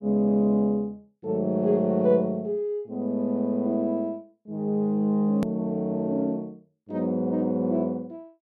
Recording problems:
edit click; at 5.5 s

